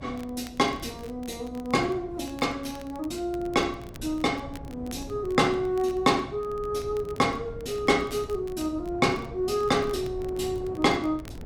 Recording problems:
hum; 60 Hz, harmonics up to 660 Hz, SNR 22 dB
wind on the microphone; below 290 Hz, SNR 17 dB
crackle; vinyl, SNR 26 dB

